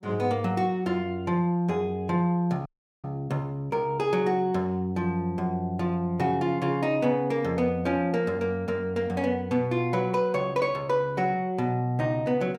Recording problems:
dropout; at 2.5 s

